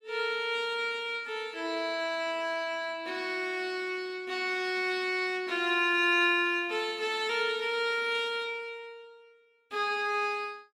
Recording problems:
none

